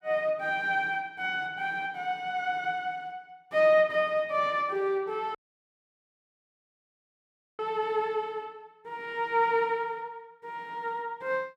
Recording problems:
dropout; at 5.5 s for 2 s

